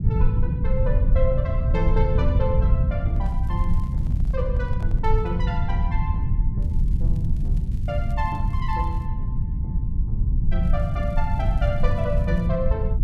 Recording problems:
rumble; below 94 Hz, SNR -6 dB
handling noise; from 3 to 5.5 s; peak -11 dB vs average level
crackle; from 3.5 to 4.5 s, from 6.5 to 9 s and from 11 to 12 s; loose cable, SNR 29 dB

